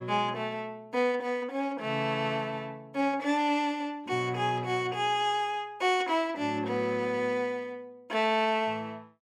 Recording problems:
none

